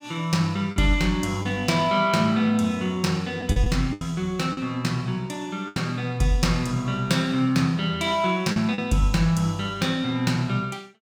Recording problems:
packet loss; 4% of the sound replaced, filled with the last packet

